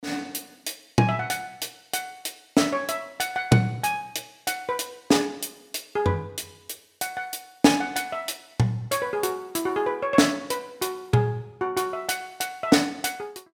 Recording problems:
none

